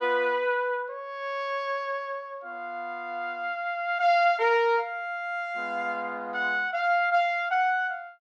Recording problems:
none

